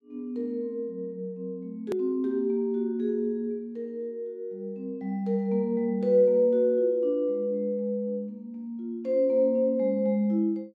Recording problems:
edit click; at 2 s

